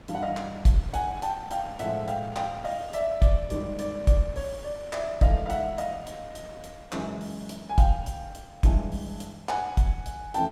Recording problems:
wind on the microphone; below 1 kHz, SNR 20 dB

